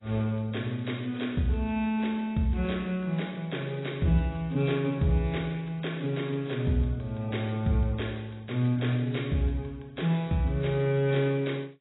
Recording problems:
codec artefacts; AAC, log-spectral distance 5 dB, nothing above 3.8 kHz

